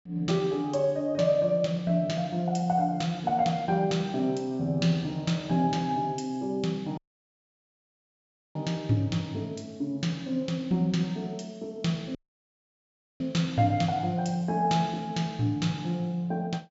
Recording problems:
treble missing; nothing above 7.6 kHz
dropout; at 7 s for 1.5 s and at 12 s for 1 s

